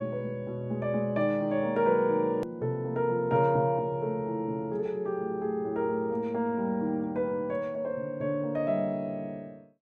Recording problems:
hard cut with a click; at 2.5 s

